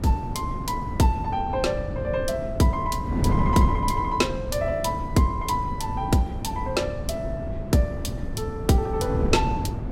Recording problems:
wind on the microphone; below 230 Hz, SNR 4 dB

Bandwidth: 16 kHz